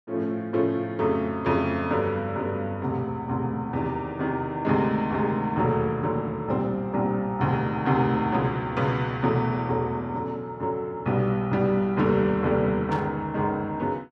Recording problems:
burst of static; at 13 s; peak -11 dB vs average level

